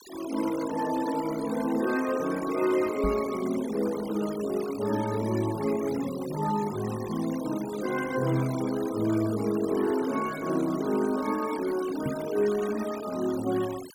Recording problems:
noise reduction artefacts; signal-to-artefact ratio 15 dB
microphone bump; at 3 s and at 12 s; peak +1 dB vs average level

